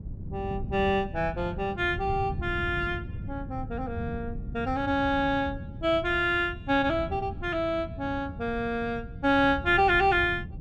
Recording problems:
wind noise; below 160 Hz, SNR 11 dB

